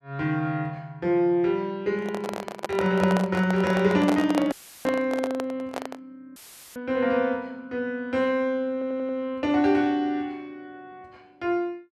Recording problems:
handling noise; from 2 to 6 s; peak +2 dB vs average level
dropout; at 4.5 s and at 6.5 s; filled with static
stutter; at 8.5 s

